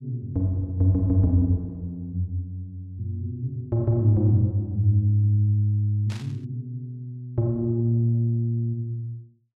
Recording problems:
burst of static; at 6 s; peak -13 dB vs average level

